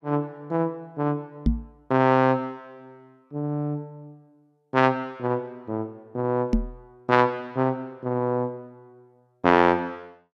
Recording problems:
microphone thump; at 1.5 s and at 6.5 s; peak +6 dB vs average level

